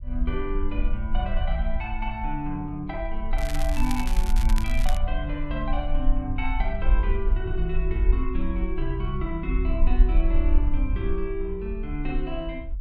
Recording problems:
low-frequency rumble; below 48 Hz, SNR -3 dB
crackle; from 3.5 to 5 s; loose cable, SNR 8 dB

